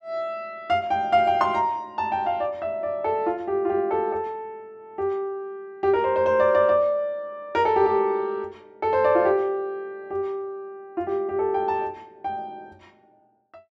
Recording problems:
none

